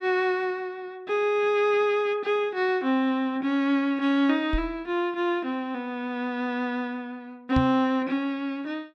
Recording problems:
microphone thump; at 4.5 s and at 7.5 s; peak +2 dB vs average level

